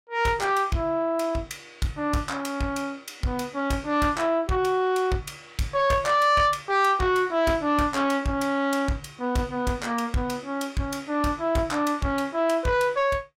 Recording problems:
distortion; soft clipping, signal-to-distortion ratio 10 dB

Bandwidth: 16.5 kHz